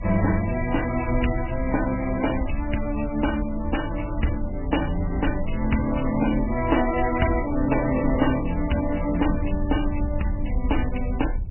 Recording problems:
lossy compression; MP3, log-spectral distance 5 dB, nothing above 2.9 kHz
wind noise; below 74 Hz, SNR 6 dB

